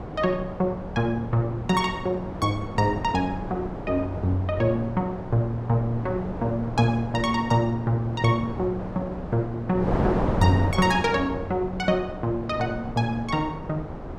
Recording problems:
wind on the microphone; below 620 Hz, SNR 7 dB

